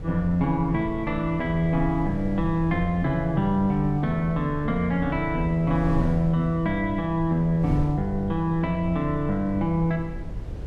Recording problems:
wind on the microphone; below 120 Hz, SNR 11 dB

